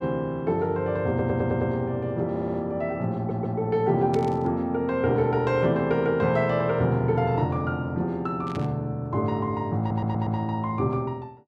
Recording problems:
audio stuttering; 4 times, first at 1 s
static burst; at 4 s and at 8.5 s; peak -10 dB vs average level

